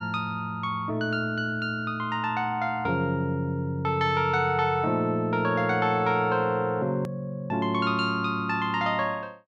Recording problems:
edit click; at 7 s

